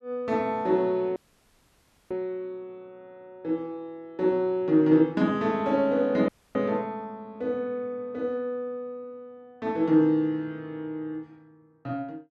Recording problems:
dropout; at 1 s for 1 s and at 6.5 s

